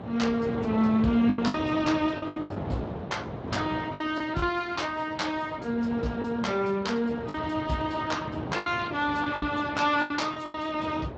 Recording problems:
lossy codec; Speex, then Vorbis, log-spectral distance 4 dB
wind on the microphone; below 640 Hz, SNR 9 dB
packet loss; 8% of the sound replaced, filled with the last packet

